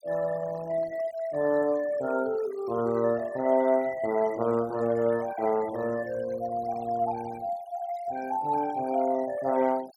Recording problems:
denoising artefacts; signal-to-artefact ratio 19 dB

